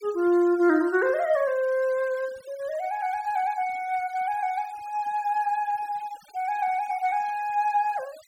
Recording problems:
noise reduction artefacts; signal-to-artefact ratio 24 dB

